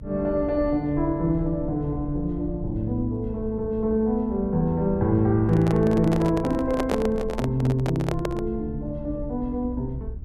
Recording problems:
low-frequency rumble; below 74 Hz, SNR 13 dB
microphone handling noise; from 5.5 to 8.5 s; peak +1 dB vs average level

